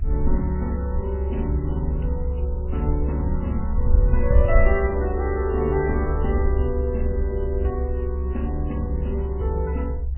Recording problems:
lossy codec; MP3, log-spectral distance 2 dB, nothing above 3 kHz
low-frequency rumble; below 68 Hz, SNR -2 dB

